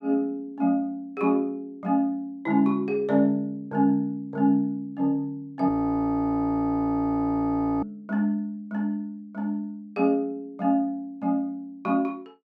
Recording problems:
audio freezing; at 5.5 s for 2 s

